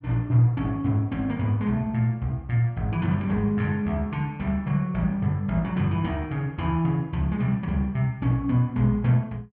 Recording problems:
none

